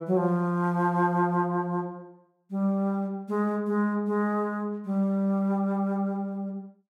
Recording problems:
none

